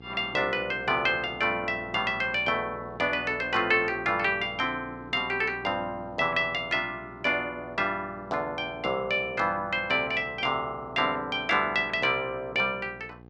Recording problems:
electrical hum; 60 Hz, harmonics up to 1.3 kHz, SNR 21 dB

